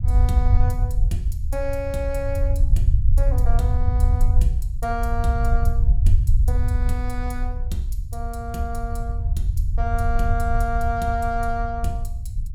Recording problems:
rumble; below 74 Hz, SNR -6 dB

